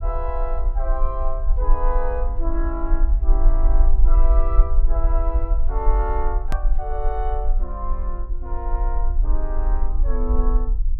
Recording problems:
rumble; below 42 Hz, strongest tone 22 Hz, SNR -7 dB
hard cut with a click; at 6.5 s

